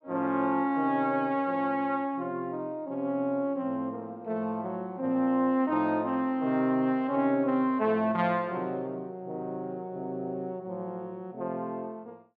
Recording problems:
none

